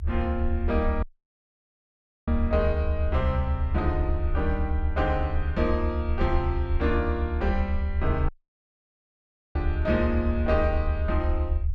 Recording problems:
low-frequency rumble; below 76 Hz, SNR -1 dB
audio cutting out; at 1 s for 1 s and at 8.5 s for 1.5 s

